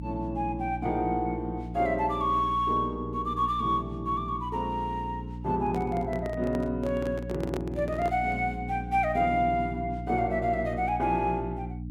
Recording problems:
hum; 60 Hz, harmonics up to 300 Hz, SNR 9 dB
handling noise; from 5.5 to 8.5 s; peak -2 dB vs average level

